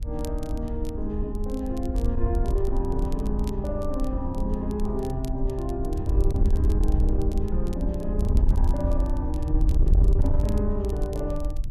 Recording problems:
distortion; soft clipping, signal-to-distortion ratio 12 dB
wind on the microphone; below 70 Hz, SNR -3 dB
crackling; vinyl, SNR 21 dB

